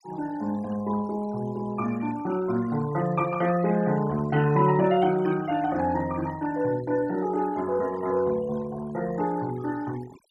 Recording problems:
noise reduction artefacts; signal-to-artefact ratio 18 dB

